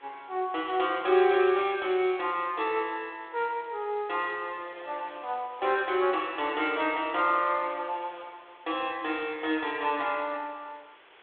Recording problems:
phone line; 320 Hz to 3.8 kHz, G.726
background hiss; SNR 27 dB

